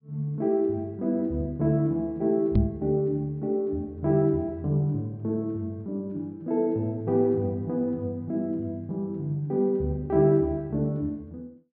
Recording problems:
treble missing; nothing above 5.5 kHz
knock on the microphone; at 2.5 s; peak +8 dB vs average level

